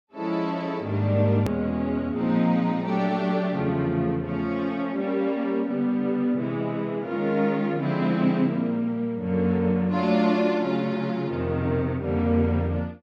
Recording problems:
click at an edit; at 1.5 s

